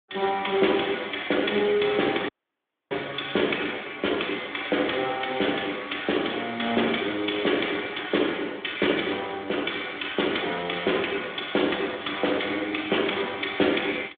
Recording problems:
telephone audio; 240 Hz to 3.6 kHz, Speex
audio cutting out; at 2.5 s for 0.5 s

